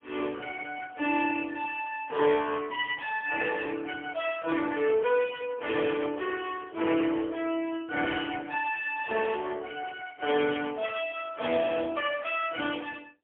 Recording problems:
telephone audio; 260 Hz to 3.4 kHz, AMR-NB, then MP3

